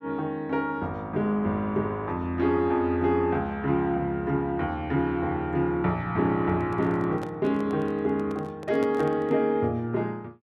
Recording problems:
microphone handling noise; from 6.5 to 9.5 s; peak -6 dB vs average level

